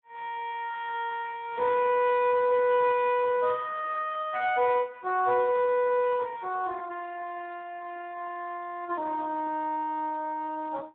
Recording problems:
telephone audio; 320 Hz to 3.7 kHz, Speex

